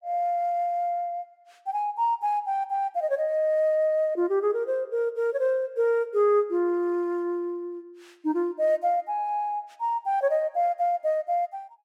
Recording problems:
none

